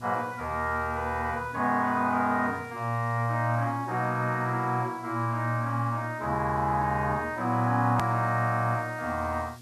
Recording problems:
hum; 60 Hz, harmonics up to 600 Hz, SNR 19 dB
background hiss; SNR 27 dB
edit click; at 8 s

